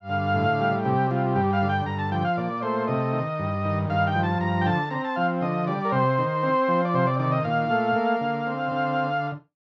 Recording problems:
none

